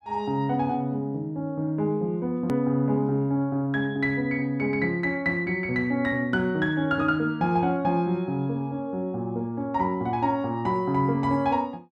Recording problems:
click at an edit; at 2.5 s

